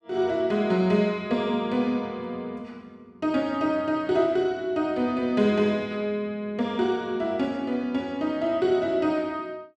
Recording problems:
none

